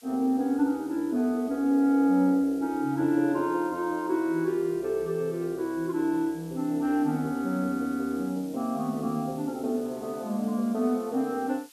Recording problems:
hiss; slope +3 dB per octave, SNR 25 dB

